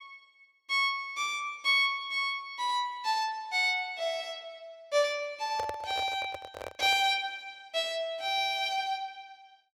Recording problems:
handling noise; from 5.5 to 7 s; peak -4 dB vs average level

